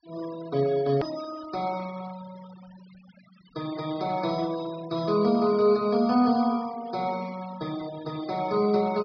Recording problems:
low-pass filter; nothing above 5.5 kHz
denoising artefacts; signal-to-artefact ratio 20 dB
edit click; at 1 s

